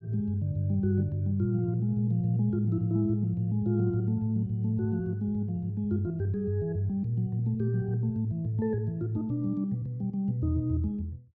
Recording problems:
none

